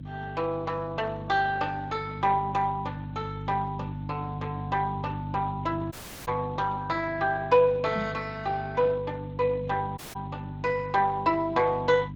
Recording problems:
codec artefacts; Speex, log-spectral distance 3 dB
hum; 50 Hz, harmonics up to 350 Hz, SNR 10 dB
dropout; at 6 s and at 10 s
knock on the microphone; at 8 s; peak -3 dB vs average level

